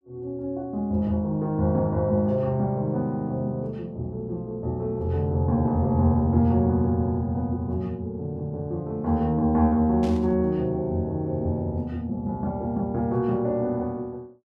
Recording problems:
static burst; at 10 s; peak -13 dB vs average level

